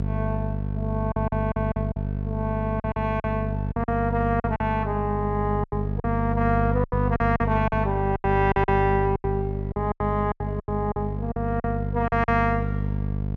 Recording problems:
hum; 50 Hz, harmonics up to 500 Hz, SNR 2 dB
packet loss; 12% of the sound replaced, filled with silence

